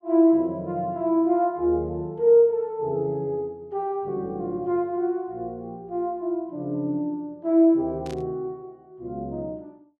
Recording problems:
burst of static; at 8 s; peak -15 dB vs average level

